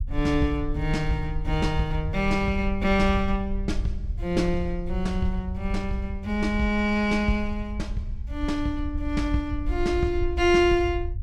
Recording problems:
low-frequency rumble; below 68 Hz, SNR 7 dB

